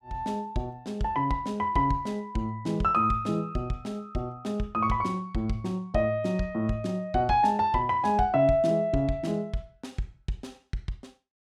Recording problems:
none

